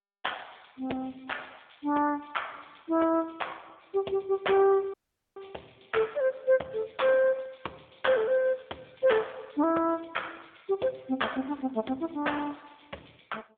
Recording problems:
telephone audio; 220 Hz to 3.6 kHz, AMR-NB
audio cutting out; at 5 s

